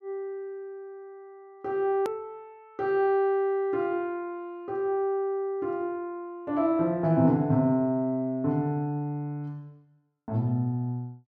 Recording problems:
edit click; at 2 s

